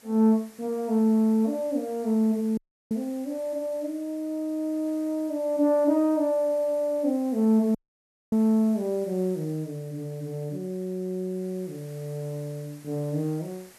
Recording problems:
background hiss; slope -2 dB per octave, SNR 25 dB
audio cutting out; at 2.5 s and at 8 s for 0.5 s

